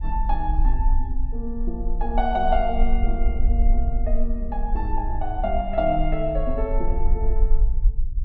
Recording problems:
low-frequency rumble; below 44 Hz, strongest tone 20 Hz, SNR -1 dB

